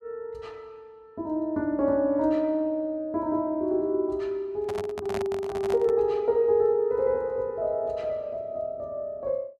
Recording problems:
handling noise; from 4.5 to 6 s; peak -4 dB vs average level

